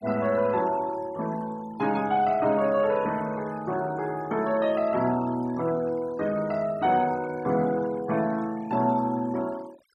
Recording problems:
noise reduction artefacts; signal-to-artefact ratio 20 dB

